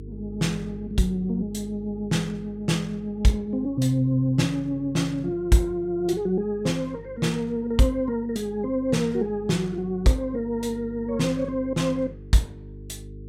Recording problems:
electrical hum; 50 Hz, harmonics up to 450 Hz, SNR 17 dB

